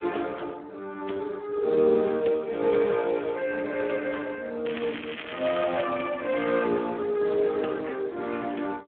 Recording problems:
telephone audio; 240 Hz to 3.1 kHz, Speex
crackling; from 4.5 to 6 s; loose cable, SNR 10 dB

